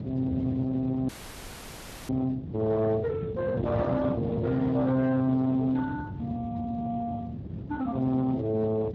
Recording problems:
lossy codec; Speex, log-spectral distance 2 dB
distortion; soft clipping, signal-to-distortion ratio 11 dB
wind noise; below 330 Hz, SNR 8 dB
audio freezing; at 1 s for 1 s

